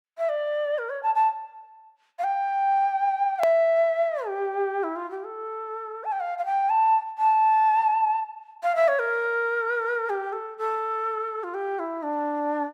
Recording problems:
edit click; at 3.5 s

